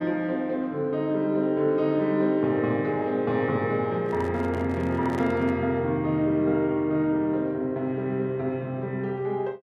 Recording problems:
microphone handling noise; from 4 to 5.5 s; peak -8 dB vs average level

